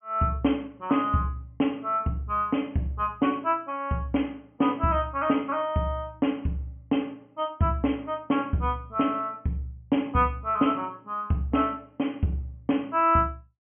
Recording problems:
low-pass filter; nothing above 3.2 kHz

